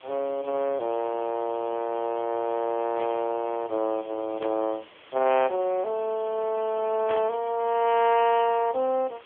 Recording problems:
phone line; 280 Hz to 3.2 kHz, AMR-NB
background hiss; SNR 23 dB
burst of static; at 3 s, at 4.5 s and at 7 s; peak -6 dB vs average level

